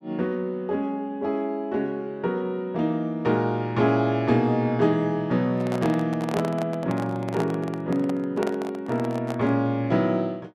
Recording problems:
microphone handling noise; from 5.5 to 9.5 s; peak -1 dB vs average level

